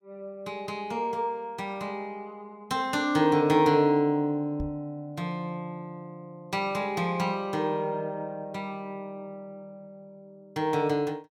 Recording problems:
knock on the microphone; at 4.5 s; peak -2 dB vs average level

